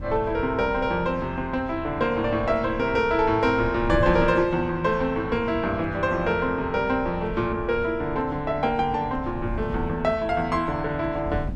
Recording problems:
wind on the microphone; below 150 Hz, SNR 13 dB

